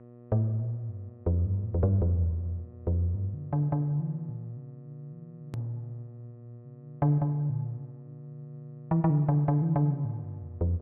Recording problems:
treble cut off; nothing above 5.5 kHz
hum; 60 Hz, harmonics up to 1.2 kHz, SNR 23 dB
hard cut with a click; at 5.5 s

